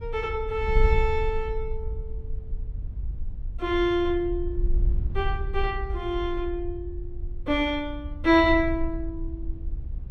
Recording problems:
wind on the microphone; below 60 Hz, SNR 6 dB

